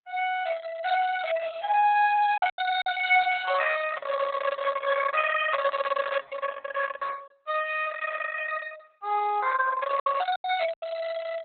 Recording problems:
codec artefacts; Opus, log-spectral distance 5 dB, nothing above 3.8 kHz
packet loss; 3% of the sound replaced, filled with silence

